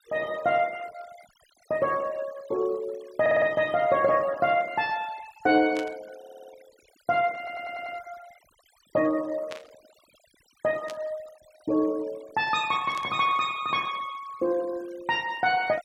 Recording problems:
noise reduction artefacts; signal-to-artefact ratio 22 dB
audio stuttering; at 3 s, at 6 s and at 7.5 s
static burst; 4 times, first at 6 s; peak -8 dB vs average level

